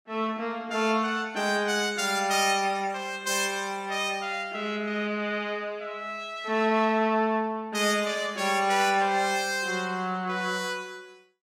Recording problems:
none

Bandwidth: 17 kHz